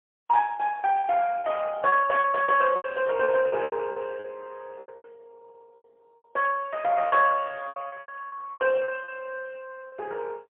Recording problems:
telephone audio; 190 Hz to 3.1 kHz, AMR-NB, then MP3
packet loss; 13% of the sound replaced, filled with repeated pitch periods

